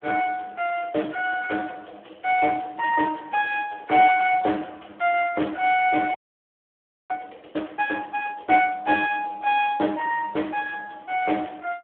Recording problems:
phone line; 260 Hz to 3.2 kHz, Speex
frozen audio; at 6 s for 1 s

